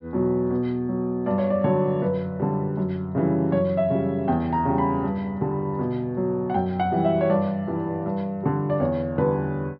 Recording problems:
low-pass filter; nothing above 5.5 kHz

